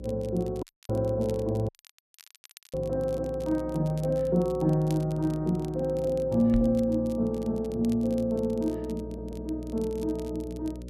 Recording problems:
electrical hum; 60 Hz, harmonics up to 600 Hz, SNR 14 dB
crackling; vinyl, SNR 25 dB
dropout; at 0.5 s and at 1.5 s for 1 s
microphone bump; at 6.5 s; peak 0 dB vs average level
stutter; at 9 s

